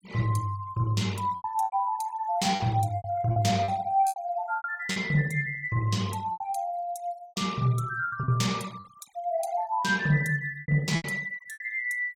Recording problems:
noise reduction artefacts; signal-to-artefact ratio 22 dB
lost packets; 9% of the sound replaced, filled with repeated pitch periods

